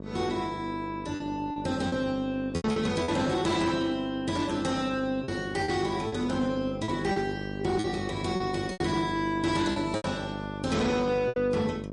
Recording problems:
codec artefacts; MP3, log-spectral distance 2 dB, nothing above 9.8 kHz
distortion; soft clipping, signal-to-distortion ratio 12 dB
hum; 50 Hz, harmonics up to 1.1 kHz, SNR 9 dB
lost packets; 7% of the sound replaced, filled with repeated pitch periods

